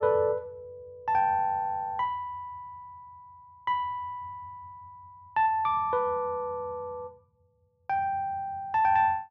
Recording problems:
none

